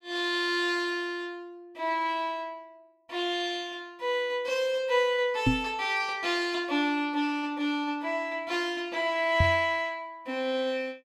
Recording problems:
microphone thump; at 5.5 s and at 9.5 s; peak +7 dB vs average level

